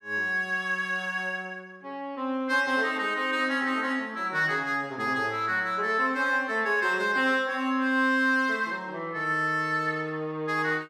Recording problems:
none

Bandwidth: 14.5 kHz